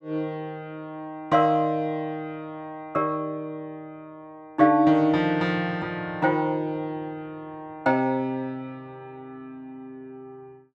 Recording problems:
none

